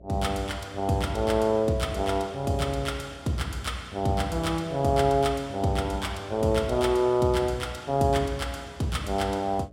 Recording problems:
hum; 60 Hz, harmonics up to 660 Hz, SNR 24 dB

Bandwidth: 16 kHz